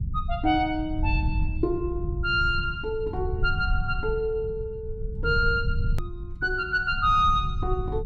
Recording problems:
rumble; below 90 Hz, SNR 5 dB
click at an edit; at 6 s

